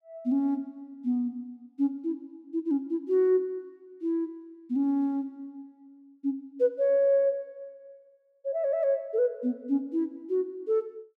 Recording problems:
none

